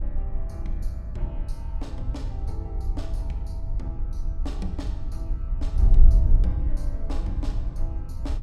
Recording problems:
wind on the microphone; below 54 Hz, SNR -12 dB

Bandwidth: 16.5 kHz